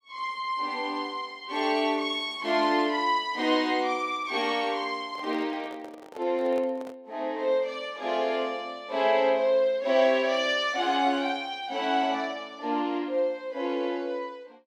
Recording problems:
handling noise; from 5 to 7 s; peak -9 dB vs average level

